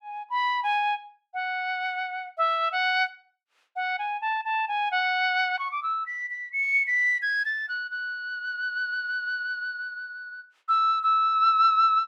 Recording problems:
none

